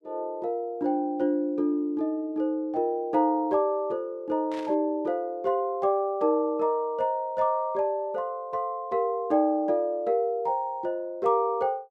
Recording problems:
burst of static; at 4.5 s; peak -13 dB vs average level

